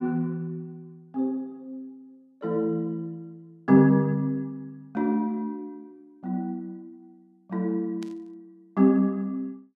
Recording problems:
static burst; at 8 s; peak -15 dB vs average level

